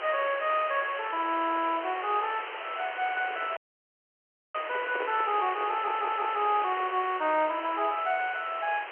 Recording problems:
phone line; 320 Hz to 3.3 kHz, G.711
hiss; SNR 9 dB
handling noise; from 3 to 7 s; peak -3 dB vs average level
dropout; at 3.5 s for 1 s
audio stuttering; at 5.5 s

